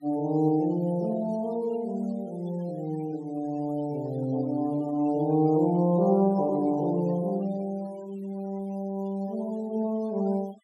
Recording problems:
noise reduction artefacts; signal-to-artefact ratio 25 dB

